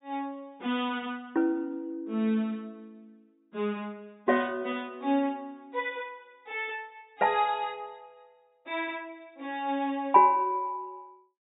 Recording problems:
treble cut off; nothing above 4 kHz

